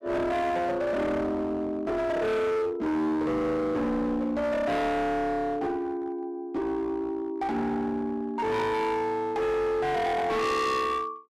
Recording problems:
distortion; hard clipping, uneven, signal-to-distortion ratio 6 dB

